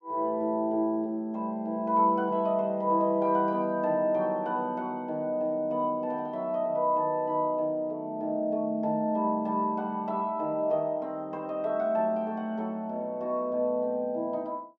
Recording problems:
none

